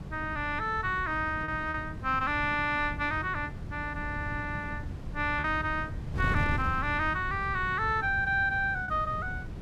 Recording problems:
wind noise; below 170 Hz, SNR 8 dB
lost packets; 1.9% of the sound replaced, filled with repeated pitch periods

